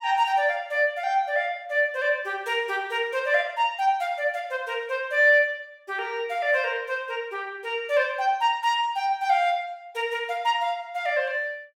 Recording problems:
none

